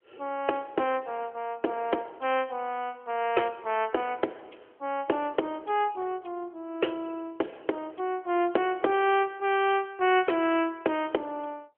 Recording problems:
telephone audio; 280 Hz to 3.2 kHz, AMR-NB

